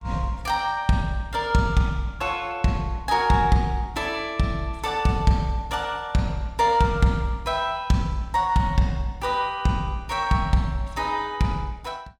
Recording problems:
none

